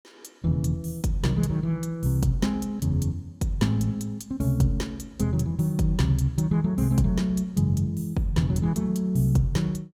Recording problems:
none

